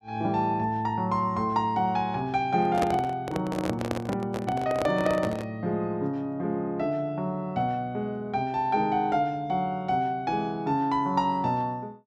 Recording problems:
microphone handling noise; from 2.5 to 5.5 s; peak +3 dB vs average level

